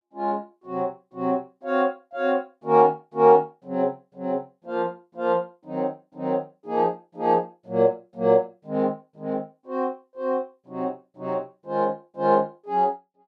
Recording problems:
none

